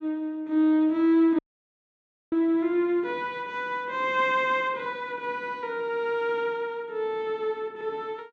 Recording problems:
audio cutting out; at 1.5 s for 1 s

